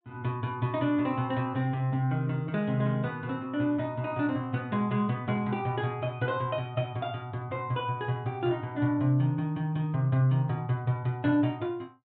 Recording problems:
treble missing; nothing above 4 kHz

